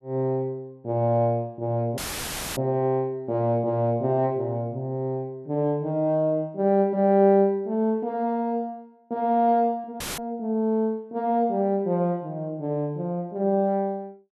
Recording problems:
audio cutting out; at 2 s for 0.5 s and at 10 s; filled with static

